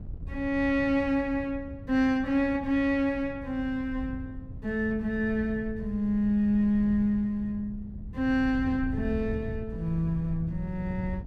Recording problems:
wind on the microphone; below 120 Hz, SNR 12 dB

